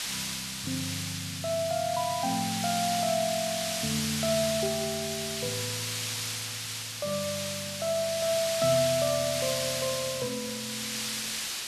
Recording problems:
background hiss; slope +3 dB per octave, SNR 1 dB

